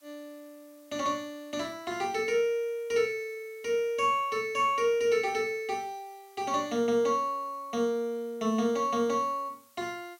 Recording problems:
hiss; SNR 30 dB

